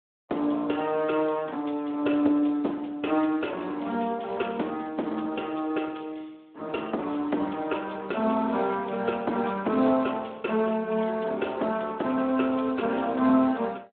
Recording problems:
telephone audio; 220 Hz to 3.5 kHz, Speex

